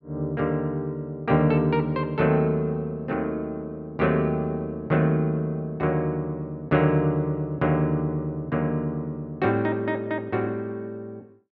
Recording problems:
none

